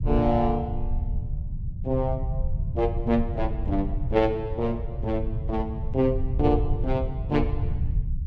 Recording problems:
low-frequency rumble; below 98 Hz, SNR 3 dB

